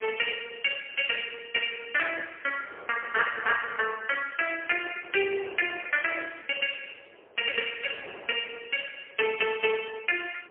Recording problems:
phone line; 340 Hz to 3.1 kHz, AMR-NB, then MP3
wind on the microphone; below 900 Hz, SNR 20 dB

